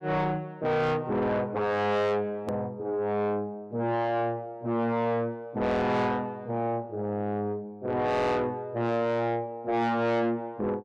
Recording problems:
distorted audio; soft clipping, signal-to-distortion ratio 8 dB
edit click; at 2.5 s

